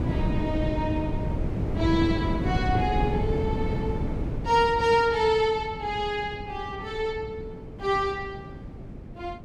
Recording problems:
wind noise; below 260 Hz, SNR 4 dB

